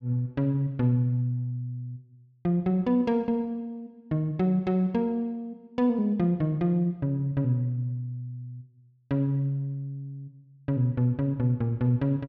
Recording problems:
none

